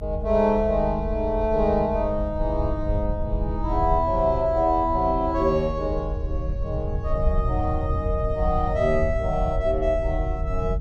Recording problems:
low-frequency rumble; below 82 Hz, SNR 5 dB

